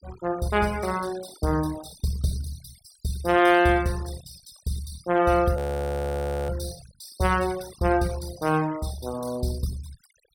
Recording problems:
denoising artefacts; signal-to-artefact ratio 18 dB
audio freezing; at 5.5 s for 1 s

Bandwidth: 17 kHz